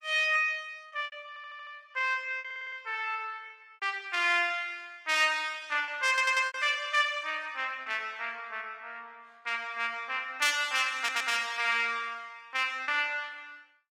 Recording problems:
codec artefacts; Opus, log-spectral distance 3 dB, nothing above 16.5 kHz
lost packets; 4% of the sound replaced, filled with repeated pitch periods
audio stuttering; 4 times, first at 1.5 s

